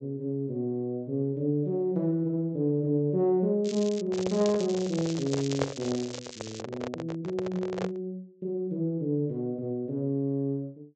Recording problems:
low-pass filter; nothing above 8 kHz
crackle; at 3.5 s and from 4 to 6.5 s; loose cable, SNR 13 dB
microphone handling noise; from 4 to 8 s; peak +4 dB vs average level

